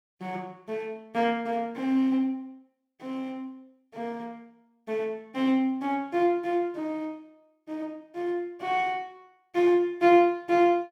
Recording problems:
none

